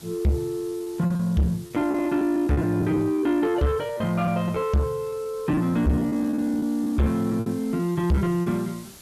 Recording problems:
distortion; soft clipping, signal-to-distortion ratio 8 dB
background hiss; SNR 23 dB
lost packets; 13% of the sound replaced, filled with repeated pitch periods

